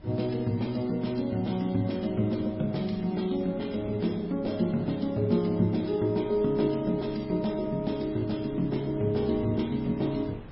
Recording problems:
lossy compression; MP3, log-spectral distance 3 dB, nothing above 5.3 kHz
wind noise; below 420 Hz, SNR 20 dB

